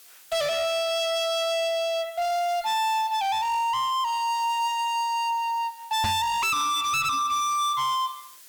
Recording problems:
distortion; soft clipping, signal-to-distortion ratio 6 dB
hiss; slope +2 dB per octave, SNR 23 dB
knock on the microphone; at 6 s; peak +3 dB vs average level

